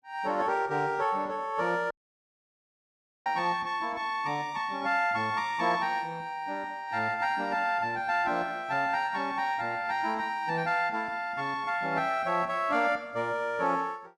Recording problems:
audio cutting out; at 2 s for 1.5 s

